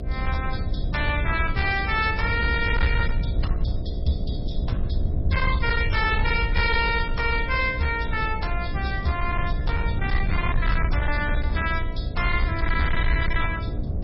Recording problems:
lossy compression; MP3, log-spectral distance 3 dB, nothing above 5.3 kHz
distortion; hard clipping, signal-to-distortion ratio 11 dB
electrical hum; 60 Hz, harmonics up to 720 Hz, SNR 10 dB
rumble; below 78 Hz, SNR 4 dB
wind on the microphone; below 140 Hz, SNR 9 dB

